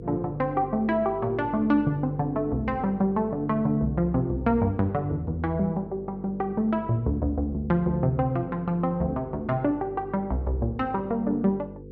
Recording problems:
hum; 50 Hz, harmonics up to 500 Hz, SNR 16 dB

